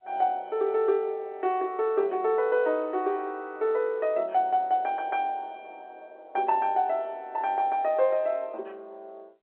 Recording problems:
telephone audio; 320 Hz to 3.6 kHz, G.711

